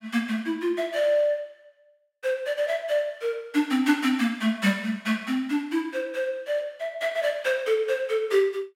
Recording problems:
none

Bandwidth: 16.5 kHz